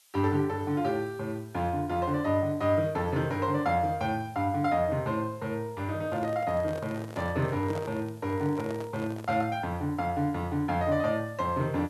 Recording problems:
background hiss; slope +4 dB per octave, SNR 29 dB
microphone handling noise; from 6 to 9.5 s; peak -7 dB vs average level

